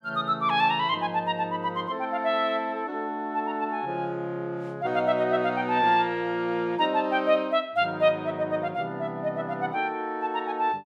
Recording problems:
none

